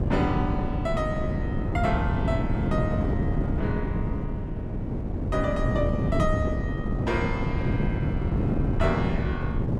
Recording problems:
wind noise; below 250 Hz, SNR -3 dB

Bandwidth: 14 kHz